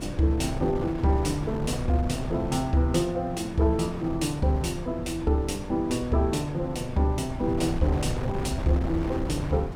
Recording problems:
wind on the microphone; below 290 Hz, SNR 8 dB

